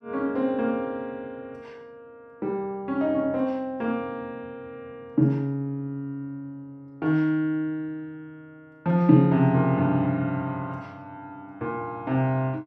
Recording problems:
none

